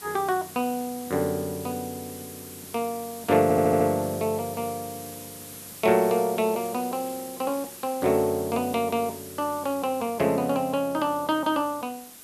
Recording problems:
background hiss; slope -1 dB per octave, SNR 14 dB
stutter; at 3.5 s

